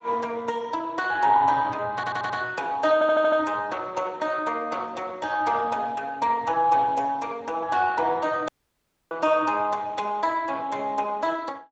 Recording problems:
lossy compression; Speex, then Speex, log-spectral distance 3 dB, nothing above 7.3 kHz
stutter; at 2 s and at 3 s
audio cutting out; at 8.5 s for 0.5 s

